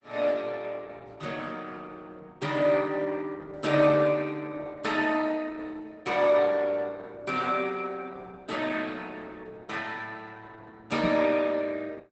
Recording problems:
lossy compression; Opus, log-spectral distance 4 dB, nothing above 8 kHz
knock on the microphone; at 11 s; peak 0 dB vs average level

